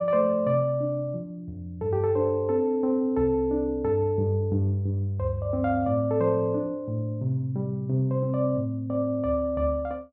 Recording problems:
none

